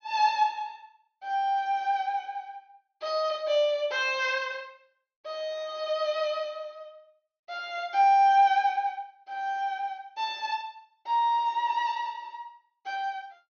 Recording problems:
treble cut off; nothing above 6.4 kHz

